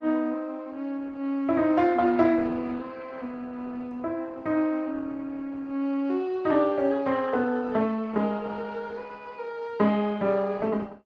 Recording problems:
codec artefacts; Opus, log-spectral distance 3 dB

